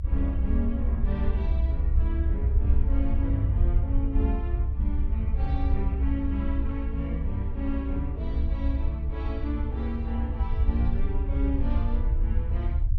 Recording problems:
low-frequency rumble; below 66 Hz, SNR -6 dB

